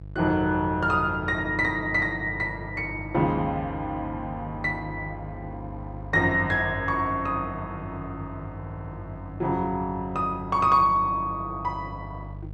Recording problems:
hum; 50 Hz, harmonics up to 650 Hz, SNR 14 dB
audio stuttering; at 8.5 s

